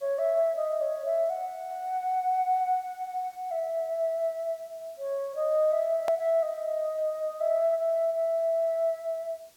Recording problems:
background hiss; slope -1 dB per octave, SNR 29 dB
click at an edit; at 6 s

